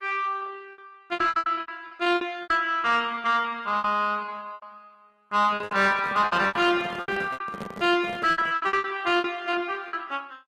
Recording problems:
lossy codec; Opus, log-spectral distance 3 dB, nothing above 14.6 kHz
distortion; soft clipping, signal-to-distortion ratio 11 dB
packet loss; 19% of the sound replaced, filled with repeated pitch periods
microphone handling noise; from 5.5 to 8.5 s; peak -7 dB vs average level

